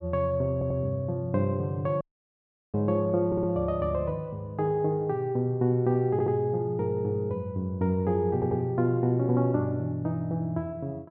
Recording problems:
audio stuttering; 4 times, first at 0.5 s
audio cutting out; at 2 s for 0.5 s

